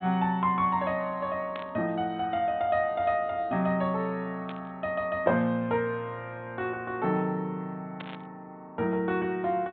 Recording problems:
low-pass filter; nothing above 4 kHz
static burst; at 1.5 s, at 4.5 s and at 8 s; peak -8 dB vs average level

